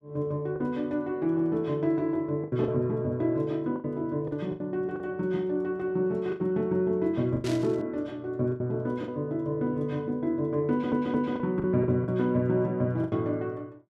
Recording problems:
packet loss; 7% of the sound replaced, filled with the last packet
static burst; at 7.5 s; peak -6 dB vs average level
stutter; at 11 s

